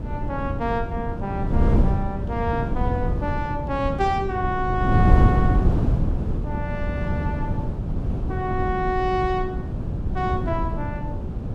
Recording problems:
wind on the microphone; below 180 Hz, SNR -2 dB

